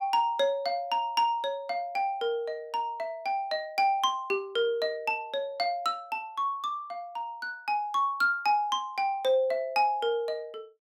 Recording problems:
none

